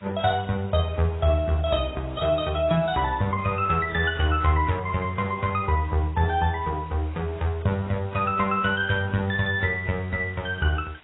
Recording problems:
codec artefacts; AAC, then AAC, log-spectral distance 6 dB, nothing above 3.3 kHz
background hiss; SNR 27 dB

